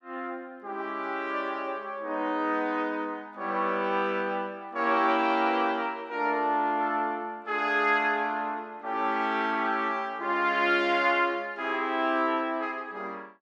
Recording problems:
none

